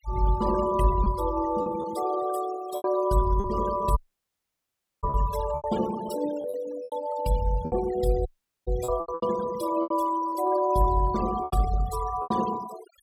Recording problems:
noise reduction artefacts; signal-to-artefact ratio 14 dB
packet loss; 9% of the sound replaced, filled with repeated pitch periods
dropout; at 4 s for 1 s and at 8.5 s

